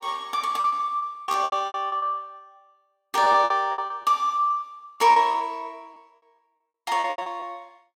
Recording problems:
lost packets; 17% of the sound replaced, filled with repeated pitch periods

